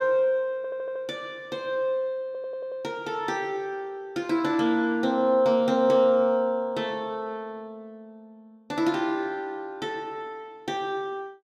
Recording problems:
stutter; at 0.5 s and at 2.5 s

